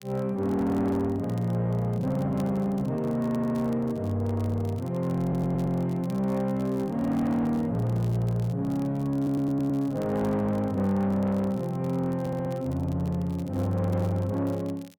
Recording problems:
distorted audio; soft clipping, signal-to-distortion ratio 10 dB
crackle; vinyl, SNR 27 dB
audio stuttering; 4 times, first at 3 s

